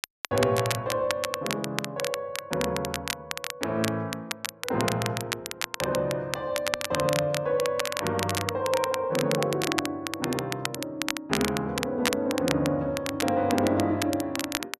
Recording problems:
crackle; vinyl, SNR 4 dB

